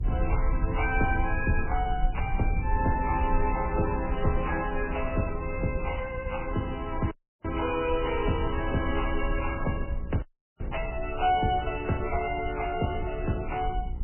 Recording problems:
codec artefacts; MP3, log-spectral distance 4 dB, nothing above 2.7 kHz
hum; 60 Hz, harmonics up to 960 Hz, SNR 18 dB
rumble; below 64 Hz, SNR 5 dB
audio cutting out; at 7 s and at 10 s

